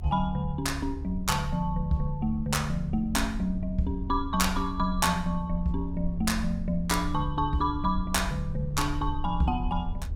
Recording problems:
rumble; below 76 Hz, SNR 8 dB

